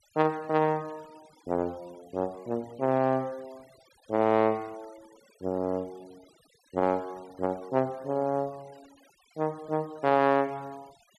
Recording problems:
noise reduction artefacts; signal-to-artefact ratio 26 dB

